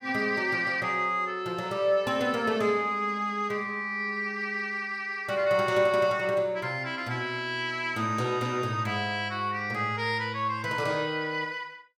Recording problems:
none

